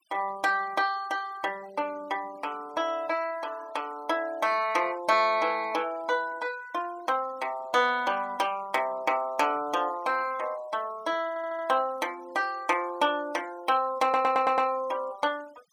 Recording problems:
noise reduction artefacts; signal-to-artefact ratio 23 dB
stutter; at 11 s and at 14 s

